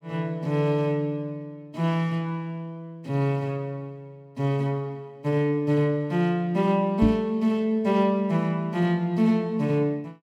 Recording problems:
microphone thump; at 7 s; peak +4 dB vs average level

